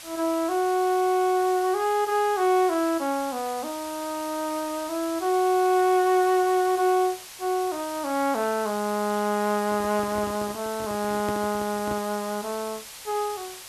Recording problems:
background hiss; SNR 14 dB
handling noise; from 9.5 to 12 s; peak -5 dB vs average level

